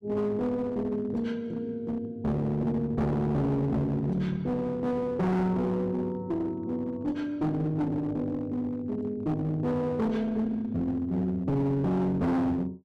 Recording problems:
distorted audio; hard clipping, uneven, signal-to-distortion ratio 7 dB

